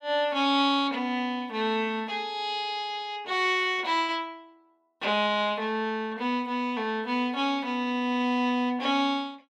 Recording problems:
none

